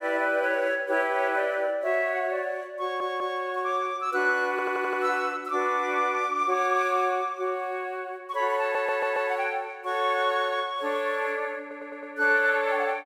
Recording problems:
audio stuttering; 4 times, first at 3 s

